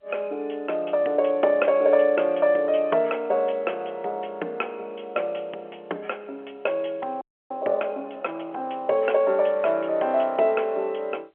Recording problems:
phone line; 340 Hz to 3.3 kHz, G.711
audio freezing; at 7 s

